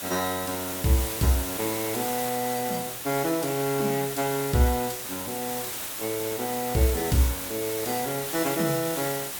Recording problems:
hiss; slope -1 dB per octave, SNR 4 dB

